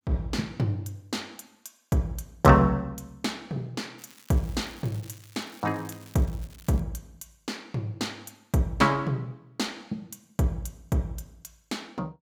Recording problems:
crackling; from 4 to 7 s; loose cable, SNR 23 dB

